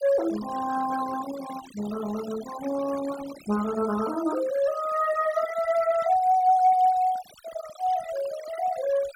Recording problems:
denoising artefacts; signal-to-artefact ratio 16 dB

